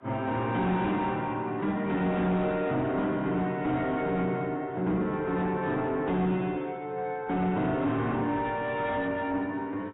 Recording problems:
lossy codec; AAC, log-spectral distance 2 dB, nothing above 3.8 kHz
distortion; soft clipping, signal-to-distortion ratio 10 dB

